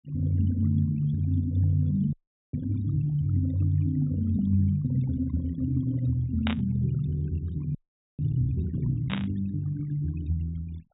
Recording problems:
treble missing; nothing above 4 kHz
noise reduction artefacts; signal-to-artefact ratio 21 dB
audio freezing; at 2 s and at 8 s
burst of static; at 6.5 s and at 9 s; peak -1 dB vs average level

